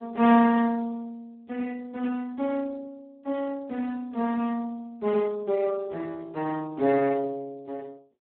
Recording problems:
phone line; 260 Hz to 2.5 kHz, Speex

